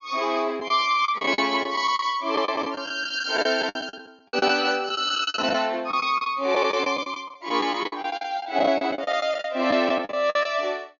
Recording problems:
treble cut off; nothing above 7 kHz
lost packets; 16% of the sound replaced, filled with the last packet

